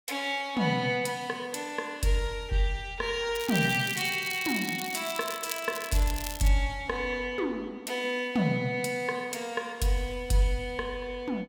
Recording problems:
crackle; from 3.5 to 6.5 s; loose cable, SNR 9 dB

